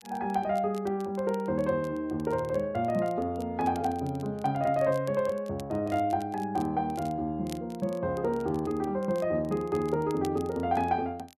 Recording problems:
crackle; vinyl, SNR 24 dB

